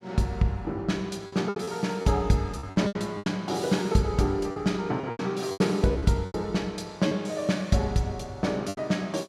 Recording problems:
lost packets; 10% of the sound replaced, filled with repeated pitch periods

